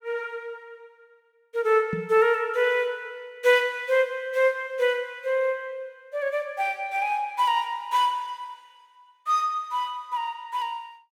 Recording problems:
knock on the microphone; at 2 s; peak -2 dB vs average level

